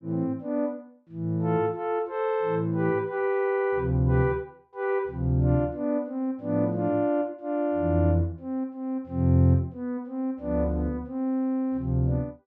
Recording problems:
none

